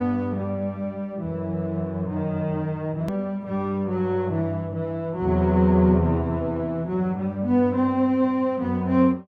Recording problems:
edit click; at 3 s

